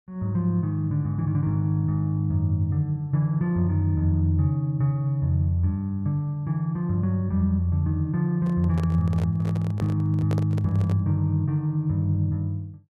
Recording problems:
microphone handling noise; from 8.5 to 11 s; peak -5 dB vs average level

